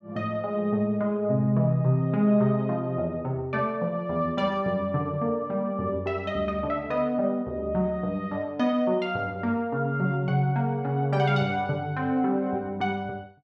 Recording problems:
none

